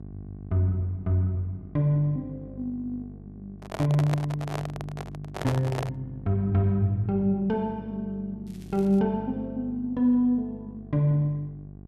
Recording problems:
mains hum; 50 Hz, harmonics up to 750 Hz, SNR 16 dB
handling noise; from 3.5 to 6 s; peak -1 dB vs average level
crackle; at 8.5 s; loose cable, SNR 29 dB

